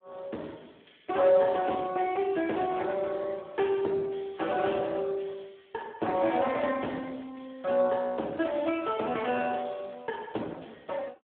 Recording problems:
phone line; 240 Hz to 3.6 kHz, Speex

